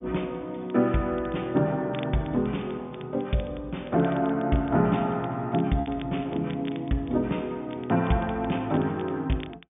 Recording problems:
treble cut off; nothing above 3.6 kHz
codec artefacts; MP2, log-spectral distance 2 dB
crackle; vinyl, SNR 23 dB
lost packets; 0.6% of the sound replaced, filled with repeated pitch periods

